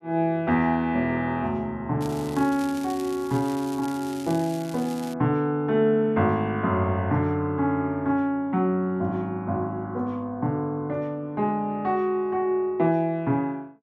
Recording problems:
crackle; from 2 to 5 s; loose cable, SNR 18 dB

